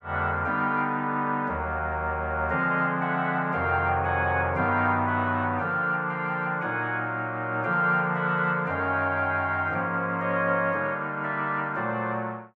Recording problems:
none

